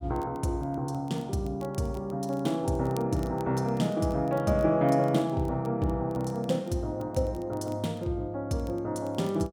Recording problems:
crackle; vinyl, SNR 28 dB

